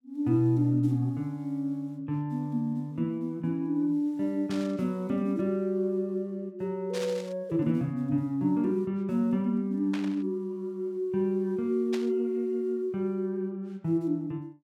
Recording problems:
burst of static; 4 times, first at 4.5 s; peak -6 dB vs average level

